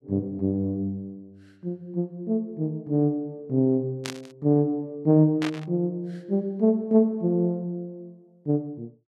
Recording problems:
static burst; at 4 s and at 5.5 s; peak -3 dB vs average level

